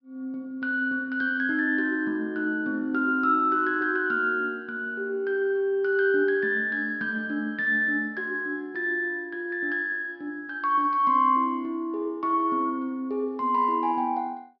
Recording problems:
low-pass filter; nothing above 5.5 kHz

